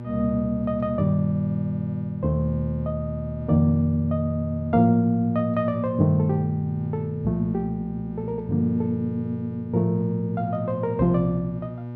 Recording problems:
hum; 60 Hz, harmonics up to 1.2 kHz, SNR 12 dB

